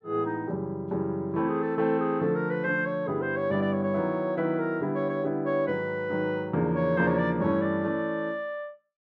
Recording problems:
none

